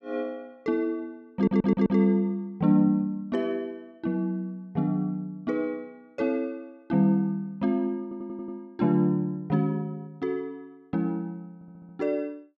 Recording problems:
stutter; at 1.5 s, at 8 s and at 12 s

